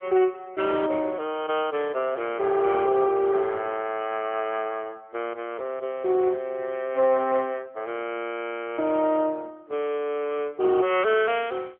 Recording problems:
phone line; 280 Hz to 3.4 kHz, AMR-NB

